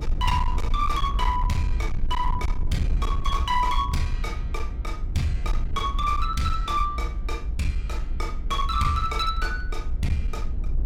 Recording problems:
distortion; hard clipping, uneven, signal-to-distortion ratio 11 dB
rumble; below 58 Hz, SNR 2 dB

